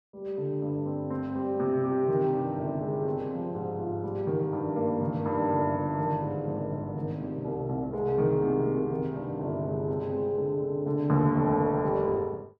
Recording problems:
none

